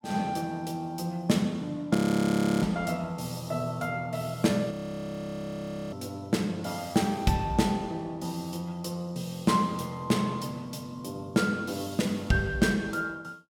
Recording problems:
frozen audio; at 2 s for 0.5 s and at 4.5 s for 1 s

